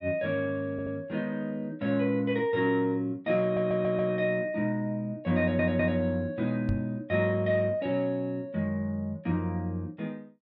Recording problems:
audio stuttering; at 0.5 s, at 3.5 s and at 5.5 s
knock on the microphone; at 6.5 s; peak +3 dB vs average level

